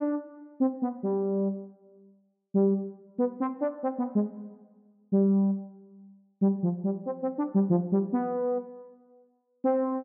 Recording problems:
none

